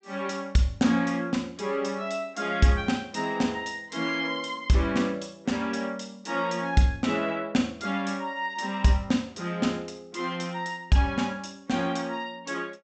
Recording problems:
low-pass filter; nothing above 8 kHz

